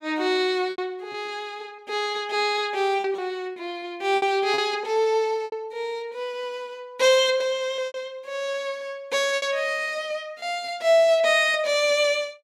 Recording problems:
packet loss; 6% of the sound replaced, filled with repeated pitch periods

